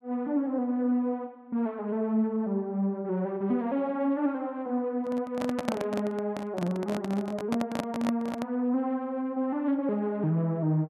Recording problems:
microphone handling noise; from 5 to 8.5 s; peak +3 dB vs average level

